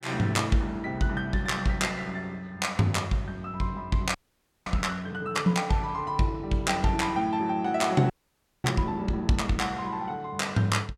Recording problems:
frozen audio; at 4 s for 0.5 s and at 8 s for 0.5 s

